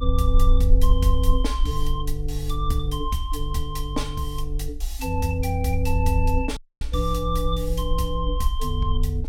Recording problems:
rumble; below 52 Hz, strongest tone 26 Hz, SNR 1 dB
audio cutting out; at 6.5 s

